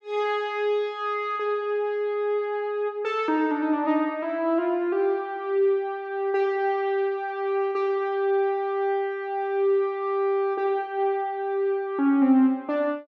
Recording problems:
none

